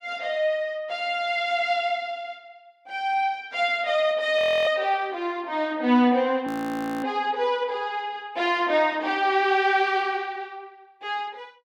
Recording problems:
frozen audio; at 4.5 s and at 6.5 s for 0.5 s

